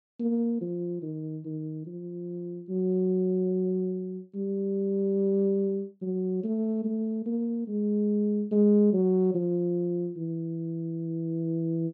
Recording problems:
none

